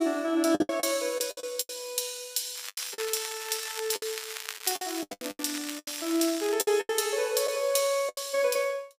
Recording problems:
lost packets; 13% of the sound replaced, filled with the last packet
crackle; from 2.5 to 6.5 s; loose cable, SNR 9 dB

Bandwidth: 15 kHz